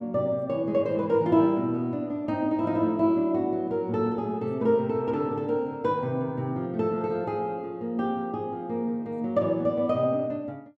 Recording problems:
none

